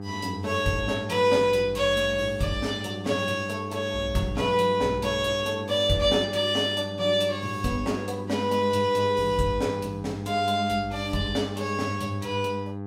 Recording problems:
hum; 50 Hz, harmonics up to 1.2 kHz, SNR 10 dB

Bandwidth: 16 kHz